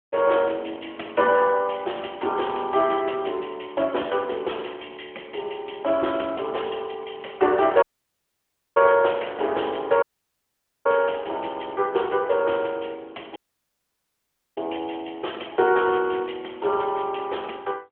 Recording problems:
phone line; 300 Hz to 3.4 kHz, AMR-NB
audio cutting out; at 8 s for 1 s, at 10 s for 1 s and at 13 s for 1 s

